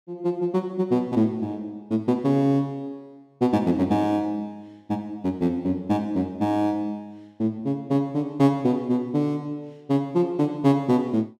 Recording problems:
none

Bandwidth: 14 kHz